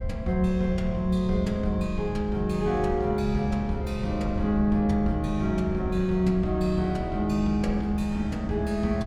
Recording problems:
rumble; below 92 Hz, SNR 11 dB

